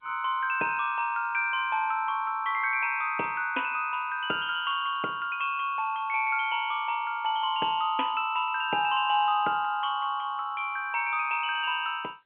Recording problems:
phone line; 300 Hz to 3.2 kHz, G.711

